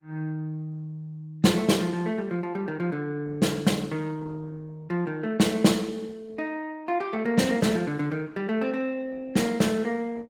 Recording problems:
codec artefacts; Opus, log-spectral distance 3 dB, nothing above 19 kHz

